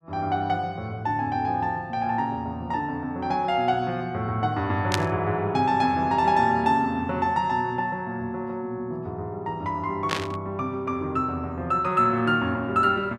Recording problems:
burst of static; at 5 s and at 10 s; peak +4 dB vs average level

